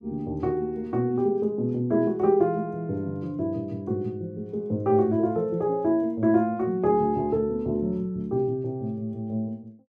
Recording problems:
none

